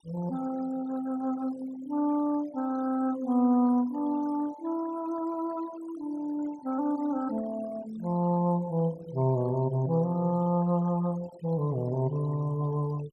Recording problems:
denoising artefacts; signal-to-artefact ratio 20 dB

